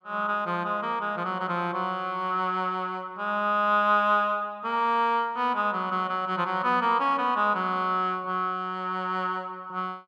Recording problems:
none

